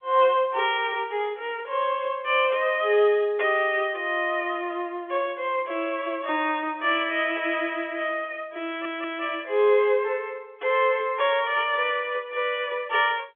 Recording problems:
telephone audio; 300 Hz to 3.4 kHz, G.711
audio stuttering; at 8.5 s

